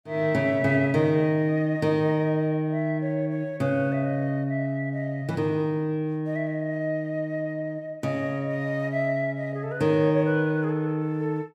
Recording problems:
none

